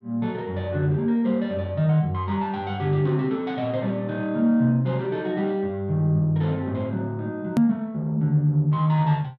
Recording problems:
hard cut with a click; at 7.5 s

